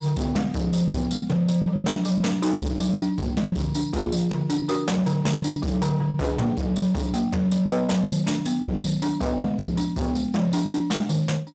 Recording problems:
lossy compression; Speex, log-spectral distance 4 dB, nothing above 7.8 kHz
distorted audio; hard clipping, signal-to-distortion ratio 6 dB
packet loss; 13% of the sound replaced, filled with the last packet

